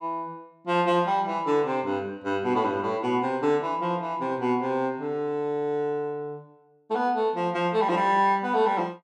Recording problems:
none

